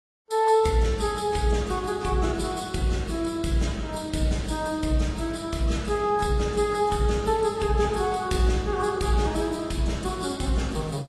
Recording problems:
lossy compression; Vorbis, then AAC, log-spectral distance 4 dB, nothing above 11.6 kHz

